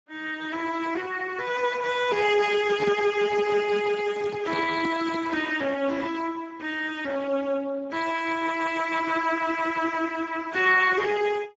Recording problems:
codec artefacts; Speex, then Speex, log-spectral distance 5 dB, nothing above 7.3 kHz
handling noise; from 2.5 to 5.5 s; peak -4 dB vs average level

